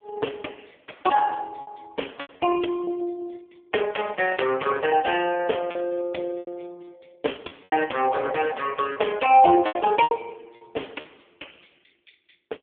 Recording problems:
phone line; 280 Hz to 3.3 kHz, AMR-NB
packet loss; 7% of the sound replaced, filled with repeated pitch periods

